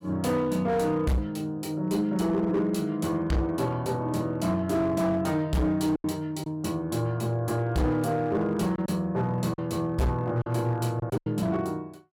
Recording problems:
distortion; hard clipping, signal-to-distortion ratio 11 dB
packet loss; 3% of the sound replaced, filled with silence

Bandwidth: 17 kHz